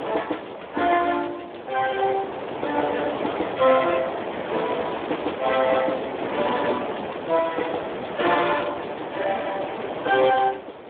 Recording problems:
phone line; 300 Hz to 3.5 kHz, Speex
wind on the microphone; below 1 kHz, SNR 6 dB

